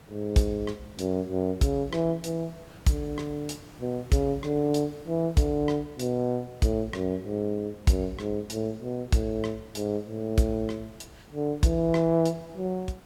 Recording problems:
background hiss; slope -5 dB per octave, SNR 23 dB

